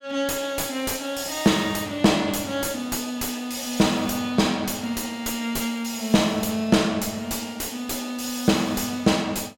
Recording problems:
distortion; soft clipping, signal-to-distortion ratio 9 dB

